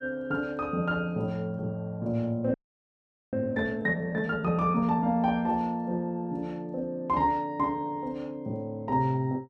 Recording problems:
frozen audio; at 2.5 s for 1 s

